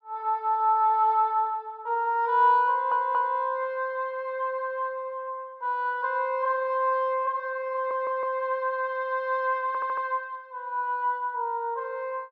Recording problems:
audio stuttering; at 2.5 s, at 8 s and at 9.5 s

